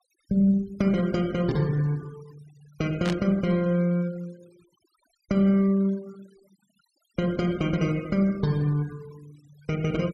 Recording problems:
noise reduction artefacts; signal-to-artefact ratio 25 dB
static burst; at 3 s; peak -4 dB vs average level

